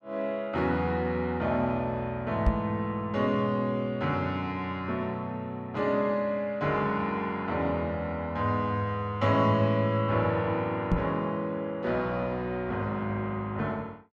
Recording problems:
knock on the microphone; at 2.5 s and at 11 s; peak +7 dB vs average level

